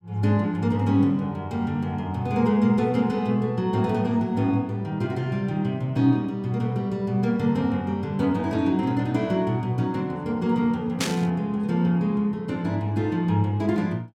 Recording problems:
burst of static; at 11 s; peak +1 dB vs average level

